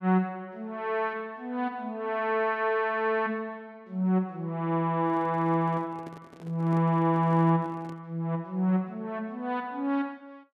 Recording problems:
handling noise; from 5 to 8 s; peak -12 dB vs average level

